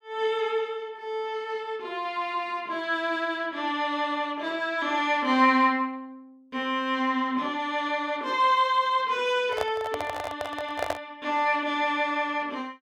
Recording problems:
microphone handling noise; from 9.5 to 11 s; peak +2 dB vs average level

